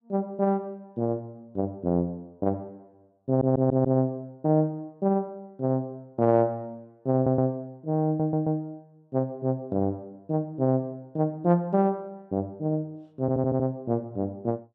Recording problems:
stutter; 4 times, first at 3.5 s

